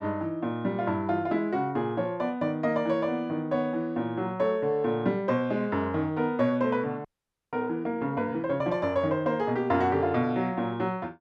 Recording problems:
frozen audio; at 7 s

